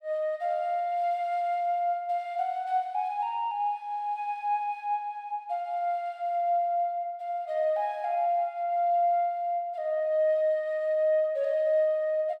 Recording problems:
none

